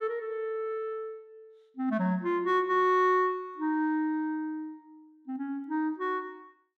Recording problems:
none

